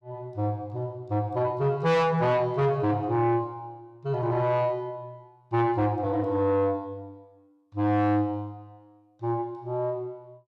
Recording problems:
distortion; soft clipping, signal-to-distortion ratio 8 dB

